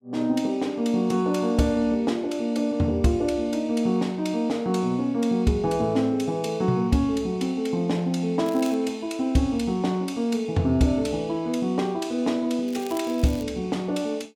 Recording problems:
crackling; at 8.5 s and at 13 s; loose cable, SNR 20 dB

